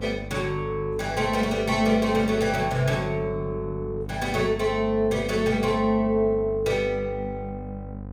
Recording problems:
hum; 50 Hz, harmonics up to 1.1 kHz, SNR 12 dB

